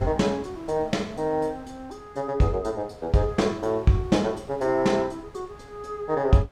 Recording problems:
wind noise; below 790 Hz, SNR 22 dB

